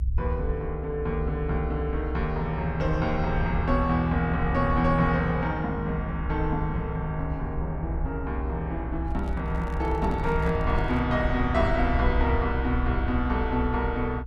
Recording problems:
low-frequency rumble; below 66 Hz, strongest tone 64 Hz, SNR 4 dB
handling noise; from 9 to 11 s; peak -10 dB vs average level

